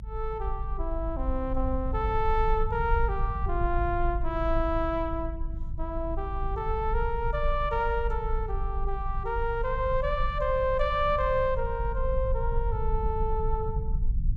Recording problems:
low-frequency rumble; below 52 Hz, strongest tone 26 Hz, SNR 3 dB

